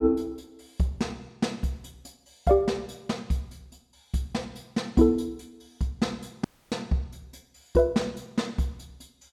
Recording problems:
dropout; at 6.5 s

